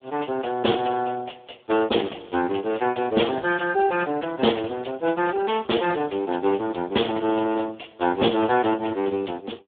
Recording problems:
phone line; 260 Hz to 2.8 kHz, Speex

